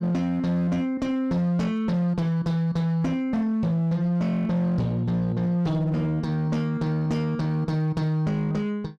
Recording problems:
distortion; hard clipping, signal-to-distortion ratio 12 dB

